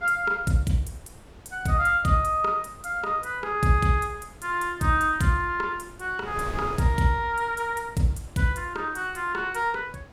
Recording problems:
wind on the microphone; below 560 Hz, SNR 20 dB

